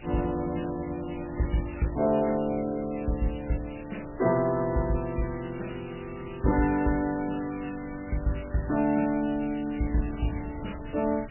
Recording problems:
lossy compression; MP3, log-spectral distance 17 dB, nothing above 2.8 kHz
hiss; SNR 20 dB
wind on the microphone; below 190 Hz, SNR 17 dB

